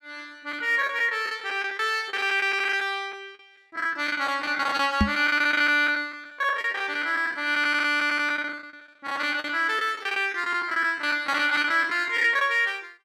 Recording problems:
packet loss; 14% of the sound replaced, filled with the last packet
knock on the microphone; at 5 s; peak +5 dB vs average level

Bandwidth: 14.5 kHz